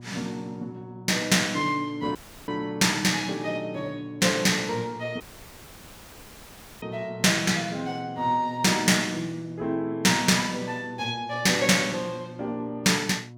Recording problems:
hum; 60 Hz, harmonics up to 960 Hz, SNR 19 dB
dropout; at 2 s and at 5 s for 1.5 s

